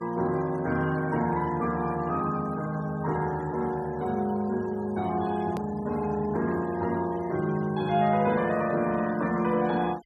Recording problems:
denoising artefacts; signal-to-artefact ratio 21 dB
edit click; at 5.5 s

